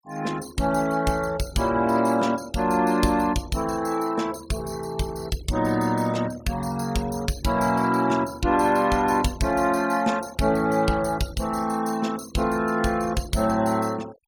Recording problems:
noise reduction artefacts; signal-to-artefact ratio 19 dB

